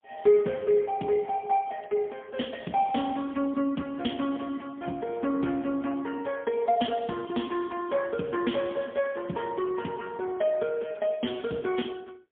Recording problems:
telephone audio; 170 Hz to 3.4 kHz, AMR-NB, then MP3

